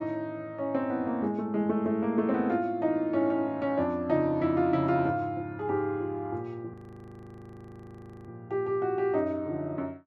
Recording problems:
frozen audio; at 6.5 s for 1.5 s

